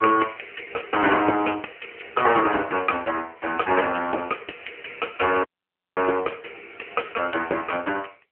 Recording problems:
telephone audio; 320 Hz to 3.1 kHz, AMR-NB
dropout; at 5.5 s for 0.5 s

